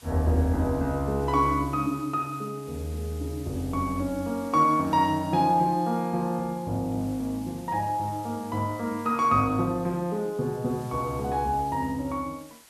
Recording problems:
background hiss; slope 0 dB per octave, SNR 23 dB

